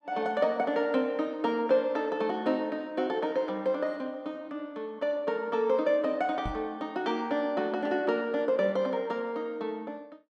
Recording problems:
microphone bump; at 6.5 s; peak -3 dB vs average level

